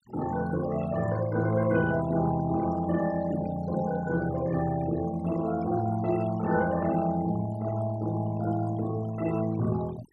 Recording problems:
noise reduction artefacts; signal-to-artefact ratio 16 dB

